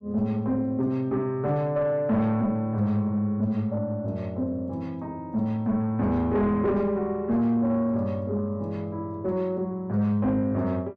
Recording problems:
distorted audio; soft clipping, signal-to-distortion ratio 11 dB

